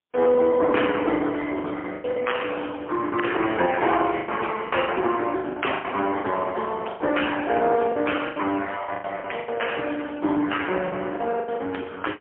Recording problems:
phone line; 240 Hz to 3.3 kHz, AMR-NB, then MP3
lost packets; 11% of the sound replaced, filled with the last packet

